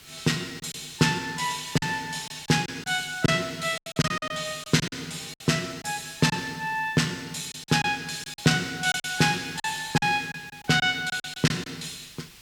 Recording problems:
hiss; SNR 23 dB
lost packets; 9% of the sound replaced, filled with silence

